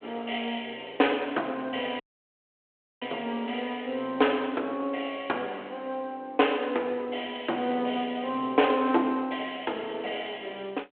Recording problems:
telephone audio; 300 Hz to 3.3 kHz, G.726
dropout; at 2 s for 1 s

